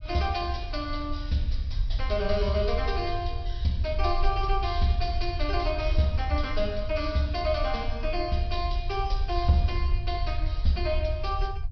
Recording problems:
treble cut off; nothing above 5.5 kHz
low-frequency rumble; below 64 Hz, SNR 3 dB

